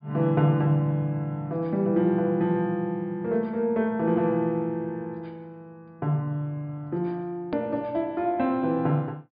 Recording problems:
treble missing; nothing above 4.9 kHz
edit click; at 7.5 s

